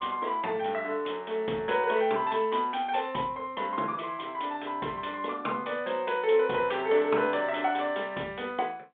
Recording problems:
phone line; 220 Hz to 3.7 kHz, G.726

